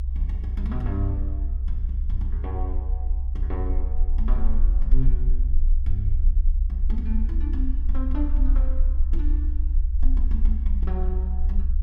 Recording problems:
low-frequency rumble; below 62 Hz, SNR -9 dB

